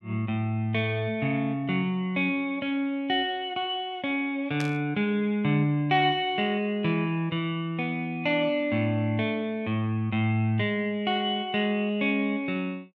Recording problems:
burst of static; at 4.5 s; peak -6 dB vs average level

